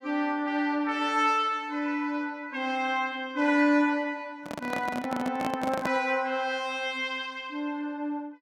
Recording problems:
handling noise; from 4.5 to 6 s; peak +1 dB vs average level

